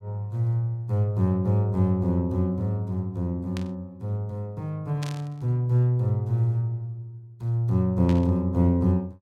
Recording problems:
burst of static; at 3.5 s, at 5 s and at 8 s; peak -9 dB vs average level

